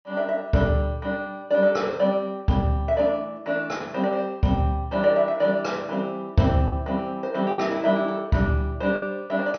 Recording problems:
low-pass filter; nothing above 6.1 kHz
packet loss; 1.9% of the sound replaced, filled with the last packet

